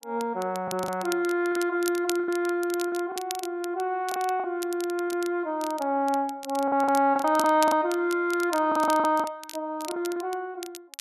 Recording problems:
crackling; vinyl, SNR 15 dB
packet loss; 8% of the sound replaced, filled with the last packet

